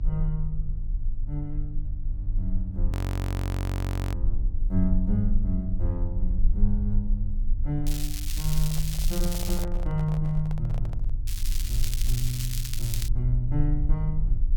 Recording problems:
hum; 50 Hz, harmonics up to 300 Hz, SNR 10 dB
low-frequency rumble; below 46 Hz, strongest tone 20 Hz, SNR -1 dB
frozen audio; at 3 s for 1 s
crackling; from 8 to 9.5 s and from 11 to 13 s; loose cable, SNR 4 dB
microphone handling noise; from 8.5 to 11 s; peak -6 dB vs average level

